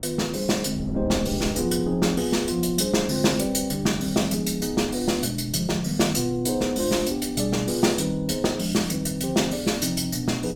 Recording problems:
wind on the microphone; below 250 Hz, SNR 15 dB

